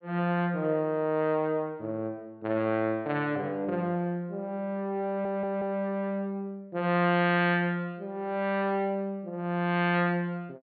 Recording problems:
treble missing; nothing above 4.5 kHz
stutter; at 5 s

